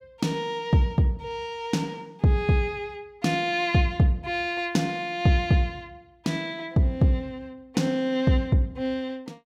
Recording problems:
none

